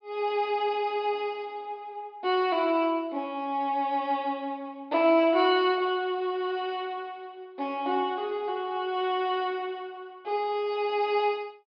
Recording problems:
treble missing; nothing above 5.5 kHz

